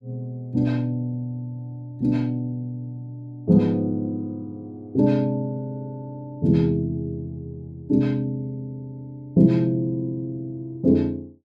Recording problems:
none

